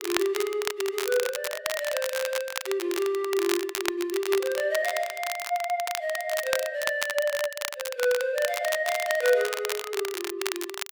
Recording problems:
crackling; vinyl, SNR 5 dB

